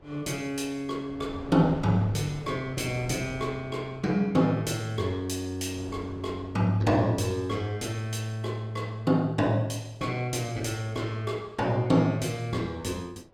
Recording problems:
wind on the microphone; below 540 Hz, SNR 16 dB

